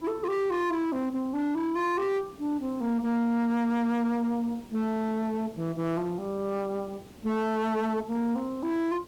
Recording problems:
distorted audio; hard clipping, uneven, signal-to-distortion ratio 11 dB
hiss; SNR 22 dB

